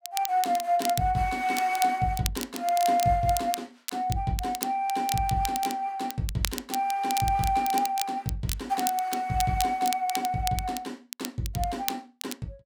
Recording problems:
crackle; vinyl, SNR 9 dB

